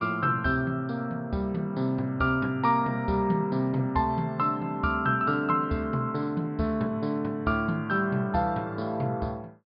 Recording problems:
low-pass filter; nothing above 5.1 kHz

